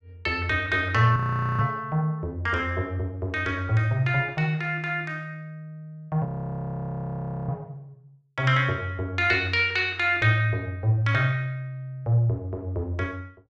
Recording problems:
frozen audio; at 1 s and at 6.5 s for 1 s

